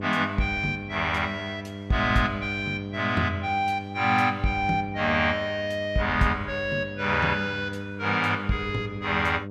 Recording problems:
hum; 50 Hz, harmonics up to 1 kHz, SNR 10 dB

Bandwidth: 14.5 kHz